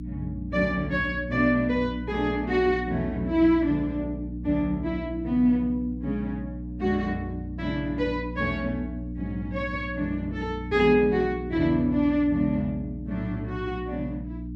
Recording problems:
hum; 60 Hz, harmonics up to 300 Hz, SNR 9 dB

